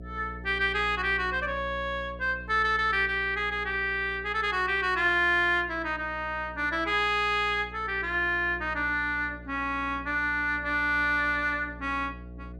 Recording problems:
electrical hum; 60 Hz, harmonics up to 660 Hz, SNR 17 dB

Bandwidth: 14 kHz